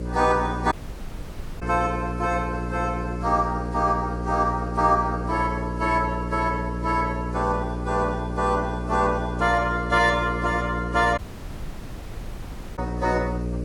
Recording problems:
lossy codec; AAC, log-spectral distance 2 dB
electrical hum; 60 Hz, harmonics up to 600 Hz, SNR 6 dB
background hiss; SNR 24 dB
audio cutting out; at 0.5 s for 1 s and at 11 s for 1.5 s

